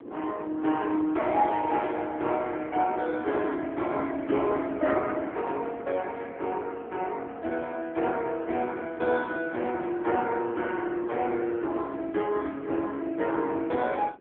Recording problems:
telephone audio; 260 Hz to 3.7 kHz, AMR-NB
wind noise; below 480 Hz, SNR 19 dB

